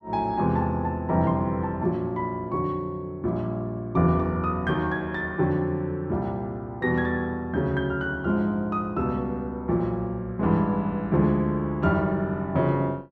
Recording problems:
none

